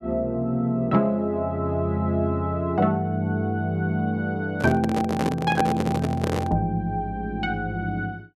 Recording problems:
microphone handling noise; from 4.5 to 6.5 s; peak +4 dB vs average level

